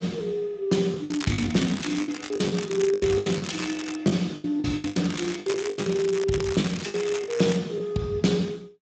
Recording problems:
lossy codec; Speex, log-spectral distance 7 dB, nothing above 7.6 kHz
lost packets; 15% of the sound replaced, filled with the last packet
crackling; from 1 to 4 s and from 5 to 7.5 s; loose cable, SNR 11 dB

